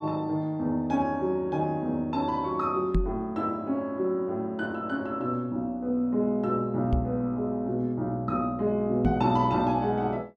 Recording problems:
microphone bump; at 3 s, at 7 s and at 9 s; peak +5 dB vs average level

